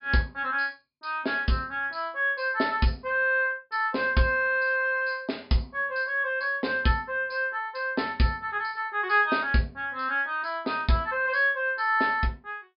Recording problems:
treble cut off; nothing above 5.5 kHz

